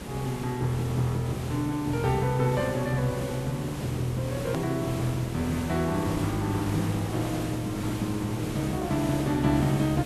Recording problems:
hiss; slope -5 dB per octave, SNR 8 dB
edit click; at 4.5 s

